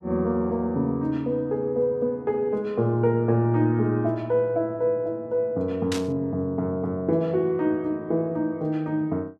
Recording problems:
static burst; at 6 s; peak -2 dB vs average level

